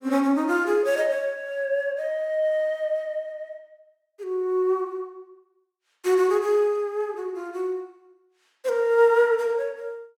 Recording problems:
none

